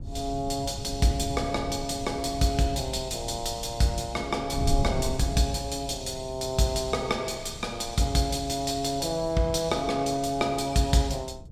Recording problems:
wind on the microphone; below 120 Hz, SNR 11 dB

